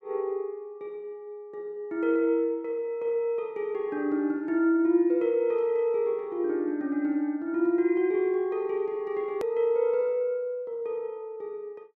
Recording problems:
hard cut with a click; at 9.5 s

